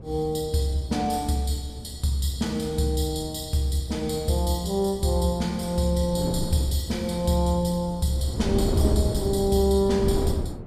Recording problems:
hum; 60 Hz, harmonics up to 660 Hz, SNR 23 dB
wind on the microphone; below 300 Hz, SNR 6 dB

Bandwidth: 14.5 kHz